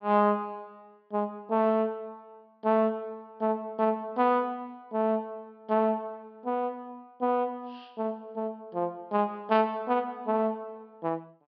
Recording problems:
low-pass filter; nothing above 5.5 kHz

